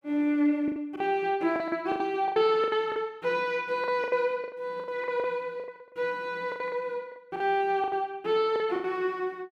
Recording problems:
packet loss; 15% of the sound replaced, filled with the last packet

